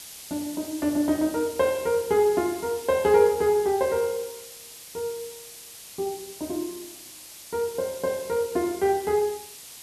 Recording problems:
hiss; SNR 15 dB

